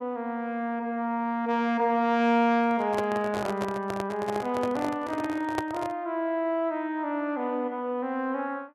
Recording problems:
microphone handling noise; from 2.5 to 6 s; peak +1 dB vs average level

